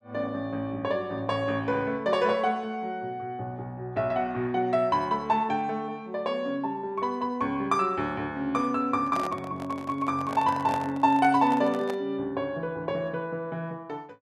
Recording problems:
microphone handling noise; from 9 to 12 s; peak -3 dB vs average level

